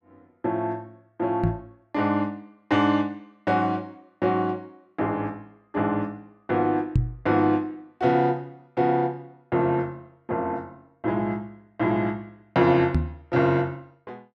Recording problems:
knock on the microphone; at 1.5 s, at 7 s and at 13 s; peak +8 dB vs average level

